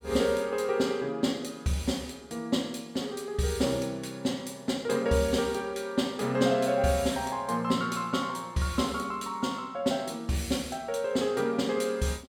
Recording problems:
none

